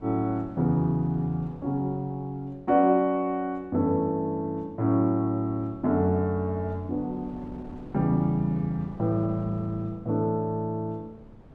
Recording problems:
wind on the microphone; below 370 Hz, SNR 21 dB

